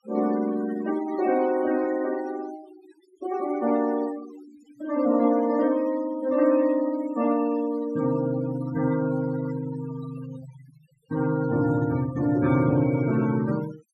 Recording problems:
denoising artefacts; signal-to-artefact ratio 16 dB

